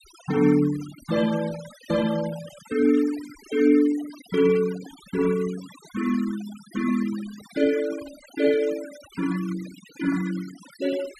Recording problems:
noise reduction artefacts; signal-to-artefact ratio 17 dB

